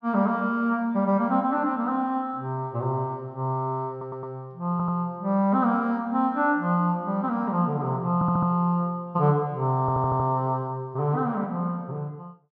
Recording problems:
stutter; 4 times, first at 4 s

